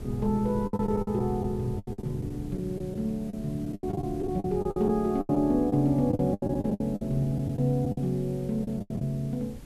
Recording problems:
background hiss; slope -2 dB per octave, SNR 27 dB
wind on the microphone; below 190 Hz, SNR 12 dB
packet loss; 15% of the sound replaced, filled with the last packet

